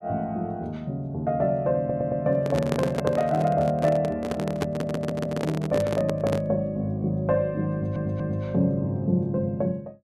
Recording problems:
stutter; at 2 s, at 4.5 s and at 7.5 s
handling noise; from 2.5 to 6.5 s; peak +2 dB vs average level

